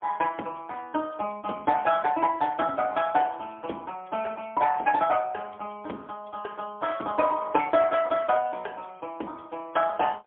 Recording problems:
phone line; 220 Hz to 2.6 kHz, AMR-NB, then MP3

